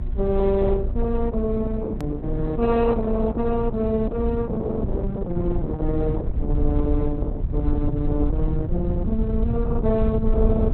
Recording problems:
lossy compression; Opus, log-spectral distance 2 dB
hum; 60 Hz, harmonics up to 1.4 kHz, SNR 17 dB
low-frequency rumble; below 72 Hz, SNR 3 dB
edit click; at 2 s

